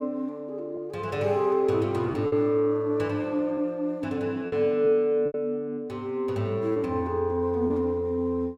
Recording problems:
packet loss; 4% of the sound replaced, filled with repeated pitch periods

